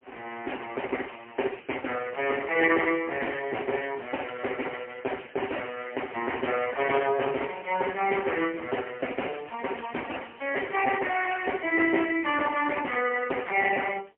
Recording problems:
telephone audio; 280 Hz to 3 kHz, AMR-NB, then MP3

